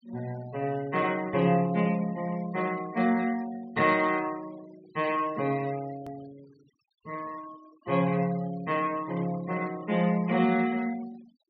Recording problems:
low-pass filter; nothing above 5.7 kHz
noise reduction artefacts; signal-to-artefact ratio 21 dB
edit click; at 6 s

